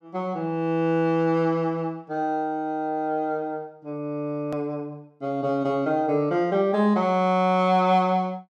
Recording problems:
edit click; at 4.5 s

